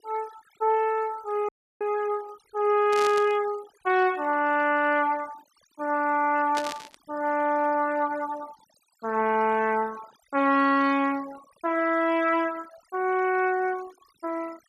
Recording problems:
denoising artefacts; signal-to-artefact ratio 22 dB
dropout; at 1.5 s
burst of static; at 3 s and at 6.5 s; peak -4 dB vs average level

